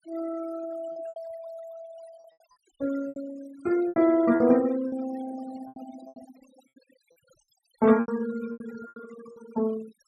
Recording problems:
denoising artefacts; signal-to-artefact ratio 18 dB
lost packets; 11% of the sound replaced, filled with repeated pitch periods

